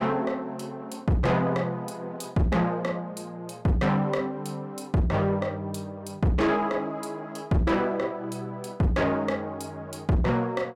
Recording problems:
distortion; soft clipping, signal-to-distortion ratio 7 dB

